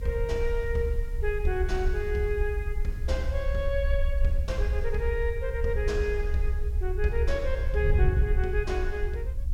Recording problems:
background hiss; SNR 28 dB
low-frequency rumble; below 64 Hz, SNR 0 dB
wind on the microphone; below 98 Hz, SNR 6 dB

